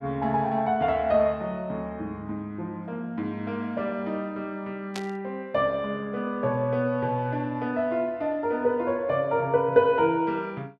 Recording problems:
burst of static; at 5 s; peak -5 dB vs average level

